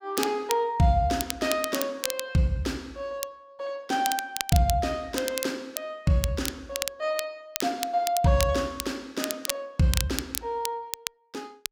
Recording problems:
crackle; vinyl, SNR 6 dB

